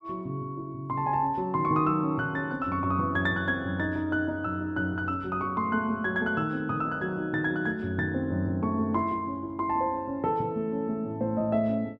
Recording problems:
none

